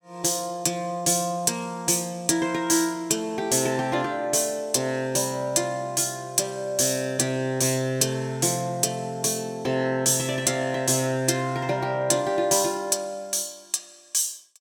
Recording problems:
none

